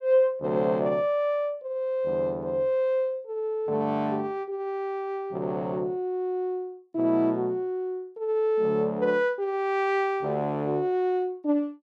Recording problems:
none

